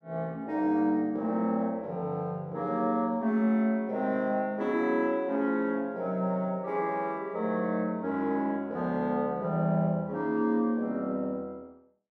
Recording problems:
none

